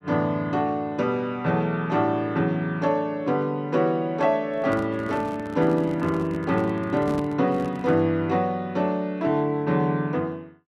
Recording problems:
microphone handling noise; from 4.5 to 8 s; peak -4 dB vs average level

